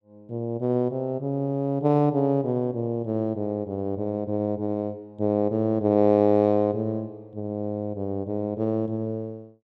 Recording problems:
none

